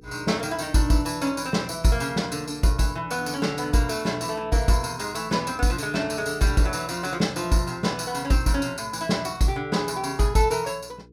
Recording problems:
hum; 60 Hz, harmonics up to 480 Hz, SNR 25 dB

